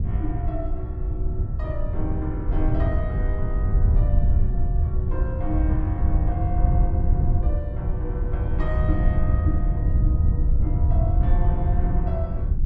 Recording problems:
wind on the microphone; below 90 Hz, SNR -9 dB

